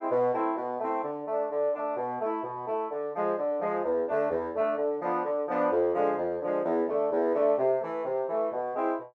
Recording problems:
none

